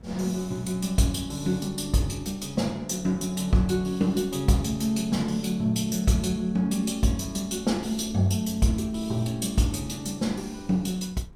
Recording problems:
wind on the microphone; below 190 Hz, SNR 23 dB

